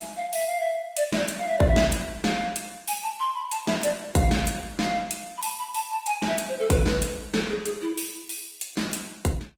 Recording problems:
codec artefacts; Opus, log-spectral distance 5 dB, nothing above 19 kHz

